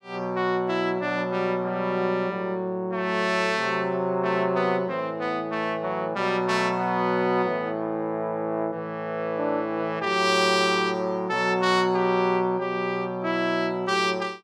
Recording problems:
none

